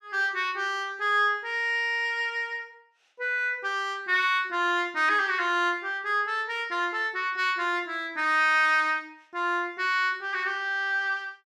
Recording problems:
none

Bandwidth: 14.5 kHz